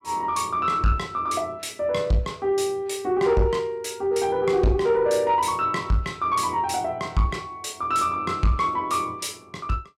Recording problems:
distorted audio; soft clipping, signal-to-distortion ratio 11 dB

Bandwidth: 16 kHz